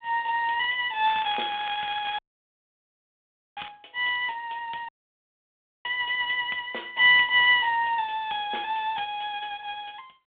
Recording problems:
phone line; 280 Hz to 3.7 kHz, G.726
crackling; from 1 to 3.5 s; loose cable, SNR 17 dB
audio cutting out; at 2 s for 1.5 s and at 5 s for 1 s

